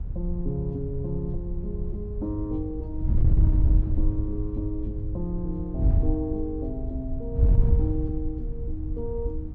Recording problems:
wind on the microphone; below 84 Hz, SNR -5 dB

